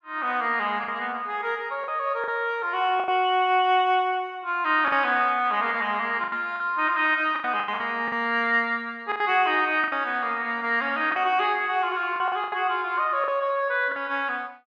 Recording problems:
packet loss; 7% of the sound replaced, filled with the last packet

